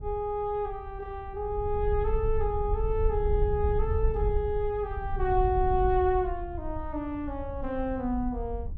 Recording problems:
wind on the microphone; below 72 Hz, SNR 4 dB

